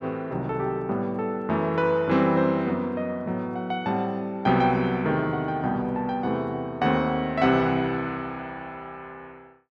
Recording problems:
none

